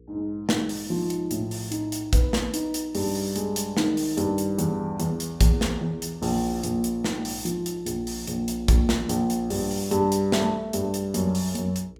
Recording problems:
mains hum; 60 Hz, harmonics up to 480 Hz, SNR 26 dB

